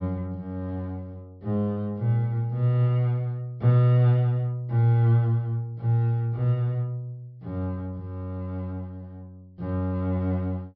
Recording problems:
low-pass filter; nothing above 5.5 kHz

